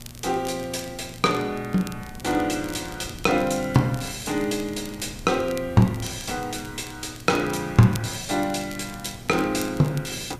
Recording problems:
electrical hum; 60 Hz, harmonics up to 600 Hz, SNR 21 dB
hiss; slope -3 dB per octave, SNR 26 dB
wind on the microphone; below 220 Hz, SNR 20 dB
crackle; vinyl, SNR 19 dB

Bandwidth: 14.5 kHz